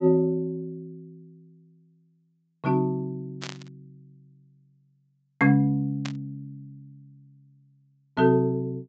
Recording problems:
treble cut off; nothing above 8 kHz
burst of static; at 3.5 s and at 6 s; peak -6 dB vs average level

